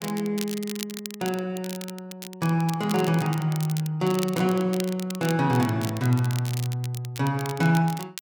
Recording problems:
crackling; vinyl, SNR 13 dB

